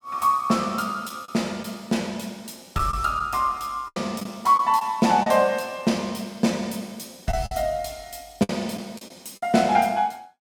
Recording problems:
lost packets; 5% of the sound replaced, filled with the last packet

